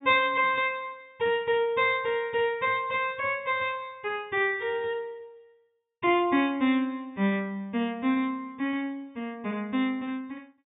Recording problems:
low-pass filter; nothing above 3.7 kHz

